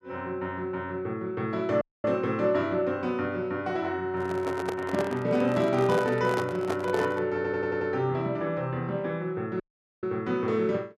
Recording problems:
dropout; at 2 s and at 9.5 s
microphone handling noise; from 4 to 7.5 s; peak 0 dB vs average level
audio stuttering; at 7.5 s

